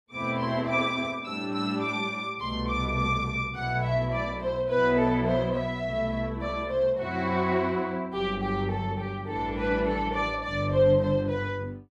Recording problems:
none

